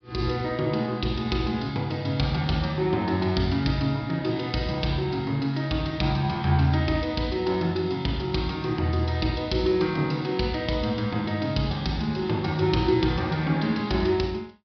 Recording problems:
treble missing; nothing above 5.5 kHz

